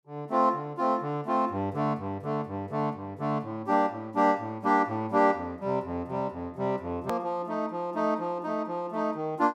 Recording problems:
hard cut with a click; at 7 s

